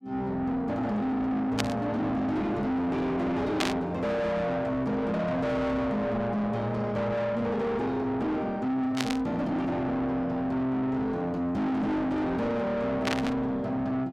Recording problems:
distorted audio; soft clipping, signal-to-distortion ratio 6 dB
static burst; 4 times, first at 1.5 s; peak +4 dB vs average level

